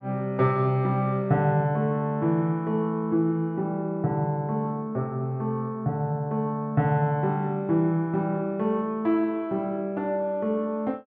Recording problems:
none

